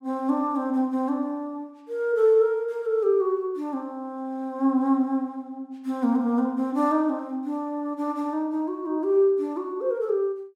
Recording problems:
none

